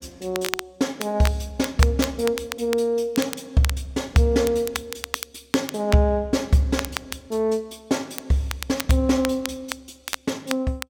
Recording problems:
crackling; vinyl, SNR 10 dB

